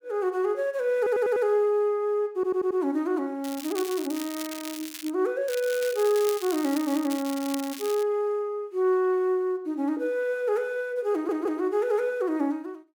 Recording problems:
stutter; at 1 s, at 2.5 s and at 11 s
crackling; from 3.5 to 5 s and from 5.5 to 8 s; loose cable, SNR 12 dB

